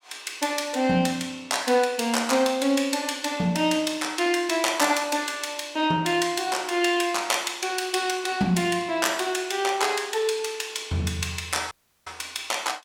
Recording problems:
audio cutting out; at 12 s

